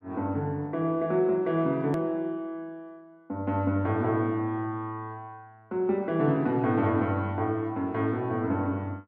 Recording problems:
click at an edit; at 2 s

